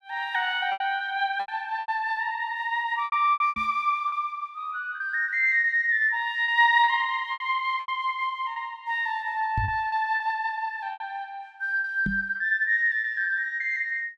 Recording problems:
packet loss; 9% of the sound replaced, filled with repeated pitch periods
knock on the microphone; at 3.5 s, at 9.5 s and at 12 s; peak -1 dB vs average level

